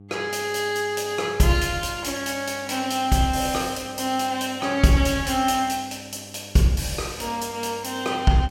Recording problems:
hum; 50 Hz, harmonics up to 800 Hz, SNR 22 dB

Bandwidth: 16.5 kHz